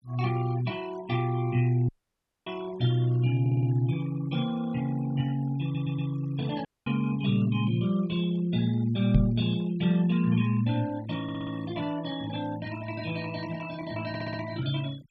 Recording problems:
noise reduction artefacts; signal-to-artefact ratio 19 dB
dropout; at 2 s for 0.5 s and at 6.5 s
audio stuttering; 4 times, first at 3.5 s
microphone bump; at 9 s; peak +8 dB vs average level

